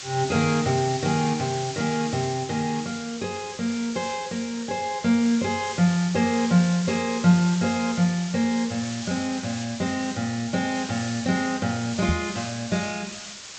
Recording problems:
treble missing; nothing above 8 kHz
background hiss; slope +2 dB per octave, SNR 11 dB
microphone bump; at 12 s; peak +4 dB vs average level

